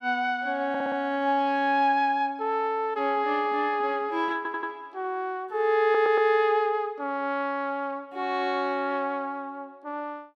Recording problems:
stutter; at 0.5 s, at 4.5 s and at 6 s

